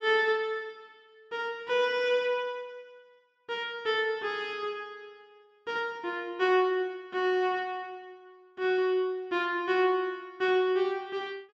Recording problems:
none

